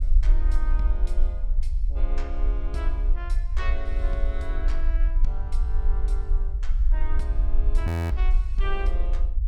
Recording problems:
low-frequency rumble; below 46 Hz, SNR -12 dB
frozen audio; at 8 s

